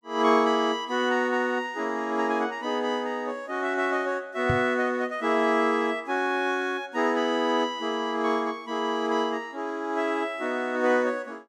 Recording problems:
microphone bump; at 4.5 s; peak +2 dB vs average level

